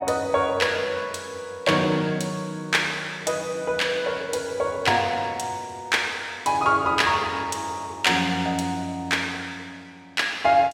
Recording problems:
none

